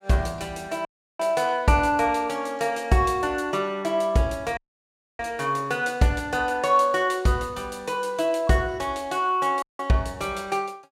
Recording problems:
audio cutting out; at 1 s, at 4.5 s for 0.5 s and at 9.5 s

